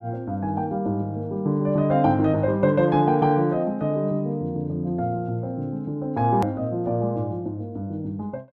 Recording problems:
edit click; at 6.5 s

